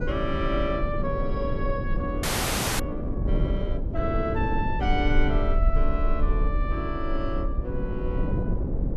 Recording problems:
rumble; below 46 Hz, SNR 1 dB
wind noise; below 300 Hz, SNR 2 dB
audio freezing; at 2 s for 0.5 s

